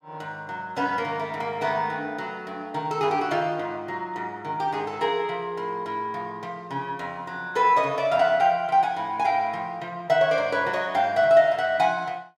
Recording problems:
none

